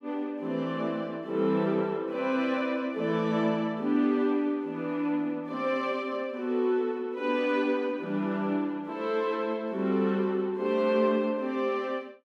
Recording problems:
none

